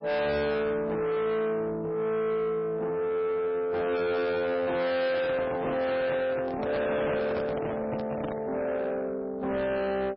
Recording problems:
codec artefacts; MP3, log-spectral distance 2 dB, nothing above 5 kHz
distortion; soft clipping, signal-to-distortion ratio 6 dB
handling noise; from 5 to 8.5 s; peak +1 dB vs average level

